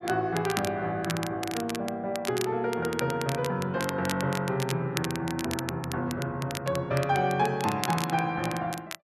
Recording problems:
crackle; vinyl, SNR 9 dB

